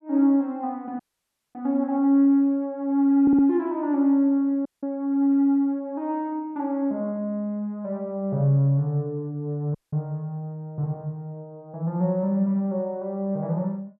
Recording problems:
dropout; at 1 s for 0.5 s, at 4.5 s and at 10 s
audio stuttering; at 3 s

